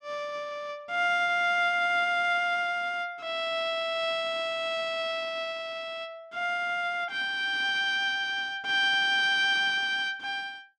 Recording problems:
none

